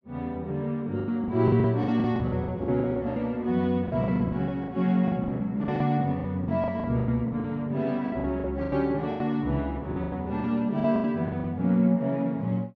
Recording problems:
lost packets; 16% of the sound replaced, filled with the last packet

